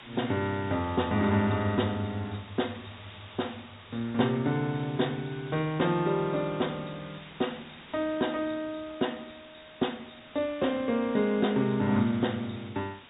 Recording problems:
low-pass filter; nothing above 4 kHz
background hiss; SNR 19 dB

